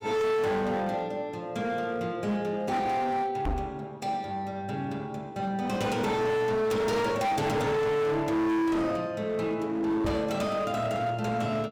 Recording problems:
distortion; hard clipping, signal-to-distortion ratio 7 dB
knock on the microphone; at 3.5 s and at 10 s; peak 0 dB vs average level

